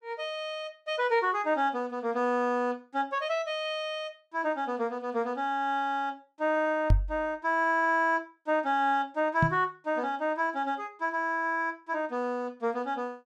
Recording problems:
knock on the microphone; at 7 s and at 9.5 s; peak +9 dB vs average level

